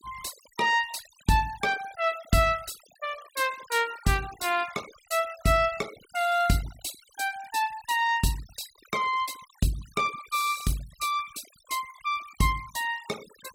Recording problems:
noise reduction artefacts; signal-to-artefact ratio 17 dB

